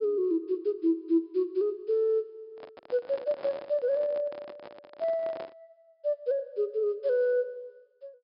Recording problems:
treble missing; nothing above 5.5 kHz
handling noise; from 2.5 to 5.5 s; peak -10 dB vs average level

